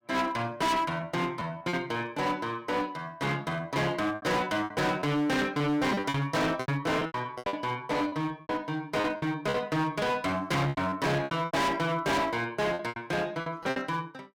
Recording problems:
distorted audio; hard clipping, uneven, signal-to-distortion ratio 6 dB
packet loss; 11% of the sound replaced, filled with repeated pitch periods

